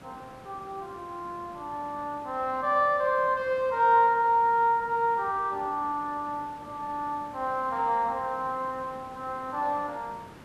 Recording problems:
hiss; slope -6 dB per octave, SNR 21 dB

